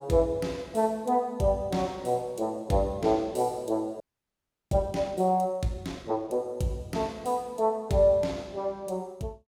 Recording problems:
frozen audio; at 4 s for 0.5 s

